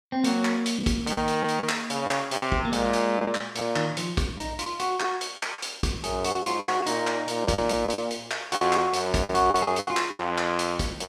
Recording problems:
packet loss; 9% of the sound replaced, filled with the last packet

